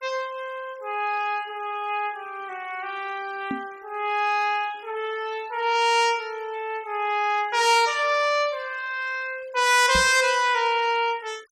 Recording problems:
noise reduction artefacts; signal-to-artefact ratio 23 dB
knock on the microphone; at 3.5 s and at 10 s; peak -3 dB vs average level

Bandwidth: 16 kHz